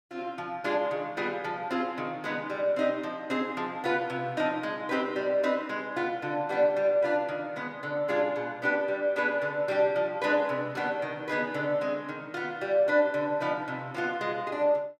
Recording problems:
none

